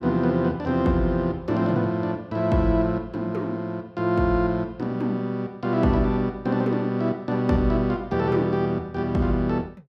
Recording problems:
none

